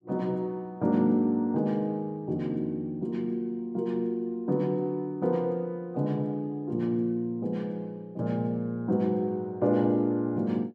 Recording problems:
none

